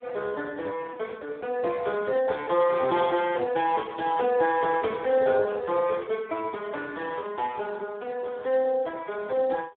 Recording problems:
phone line; 300 Hz to 3.8 kHz, Speex

